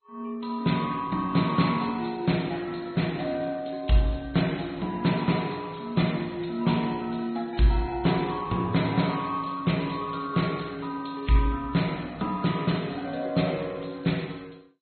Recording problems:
lossy compression; Vorbis, then MP2, log-spectral distance 6 dB, nothing above 4.2 kHz

